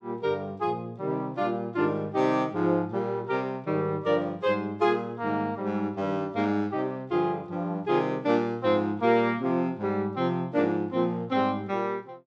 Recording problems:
none

